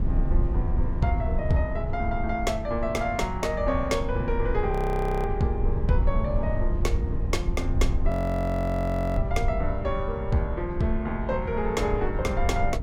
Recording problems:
rumble; below 88 Hz, SNR 1 dB
wind on the microphone; below 550 Hz, SNR 21 dB
audio freezing; at 4.5 s for 0.5 s and at 8 s for 1 s

